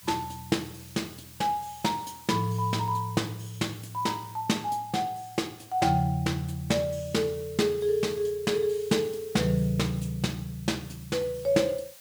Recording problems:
background hiss; slope +1 dB per octave, SNR 20 dB

